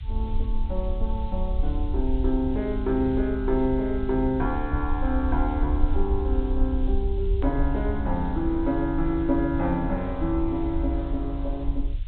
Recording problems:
low-pass filter; nothing above 4 kHz
background hiss; SNR 27 dB
rumble; below 64 Hz, SNR 3 dB
click at an edit; at 7.5 s

